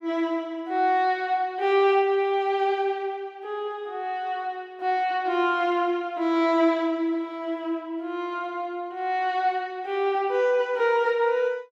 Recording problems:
none

